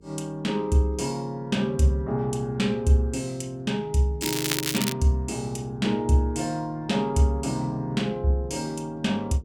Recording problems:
mains hum; 50 Hz, harmonics up to 450 Hz, SNR 26 dB
crackle; at 4 s; loose cable, SNR 2 dB

